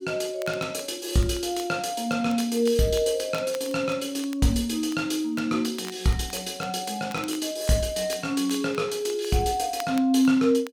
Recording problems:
crackling; vinyl, SNR 21 dB

